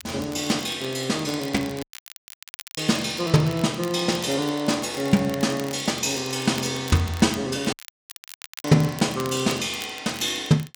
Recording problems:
crackle; vinyl, SNR 17 dB
dropout; at 2 s for 1 s and at 7.5 s for 1 s

